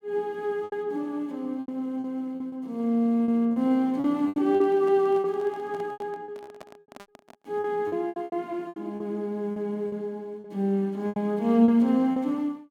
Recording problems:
lost packets; 12% of the sound replaced, filled with repeated pitch periods
microphone handling noise; from 4.5 to 7.5 s; peak -13 dB vs average level

